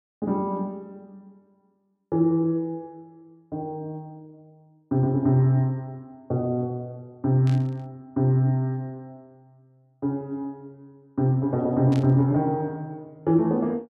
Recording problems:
burst of static; at 7.5 s and at 12 s; peak -13 dB vs average level

